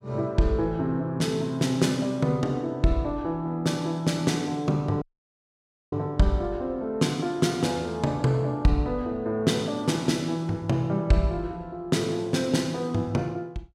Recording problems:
audio cutting out; at 5 s for 1 s

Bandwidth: 16 kHz